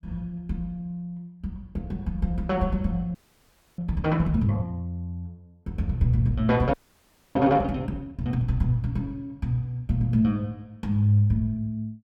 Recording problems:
audio freezing; at 3 s for 0.5 s and at 6.5 s for 0.5 s

